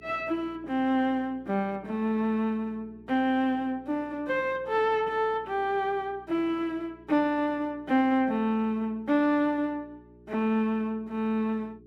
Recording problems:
hum; 60 Hz, harmonics up to 420 Hz, SNR 25 dB

